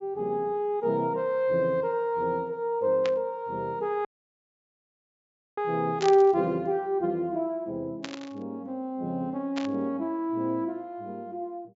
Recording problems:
low-pass filter; nothing above 8 kHz
burst of static; 4 times, first at 3 s; peak -3 dB vs average level
dropout; at 4 s for 1.5 s

